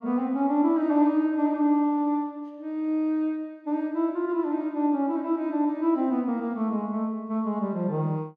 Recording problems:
none

